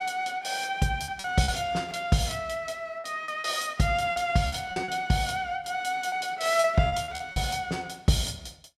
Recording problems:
packet loss; 7% of the sound replaced, filled with repeated pitch periods

